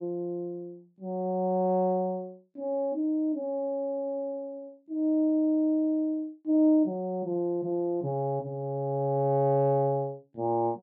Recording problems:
none

